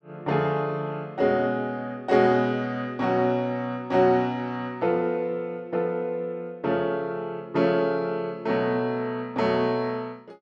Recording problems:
none

